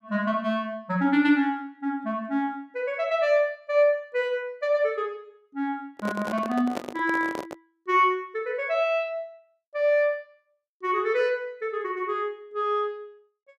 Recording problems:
microphone handling noise; from 6 to 7.5 s; peak -2 dB vs average level

